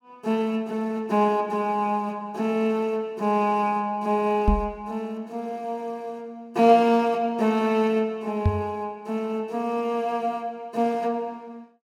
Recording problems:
microphone thump; at 4.5 s and at 8.5 s; peak +7 dB vs average level

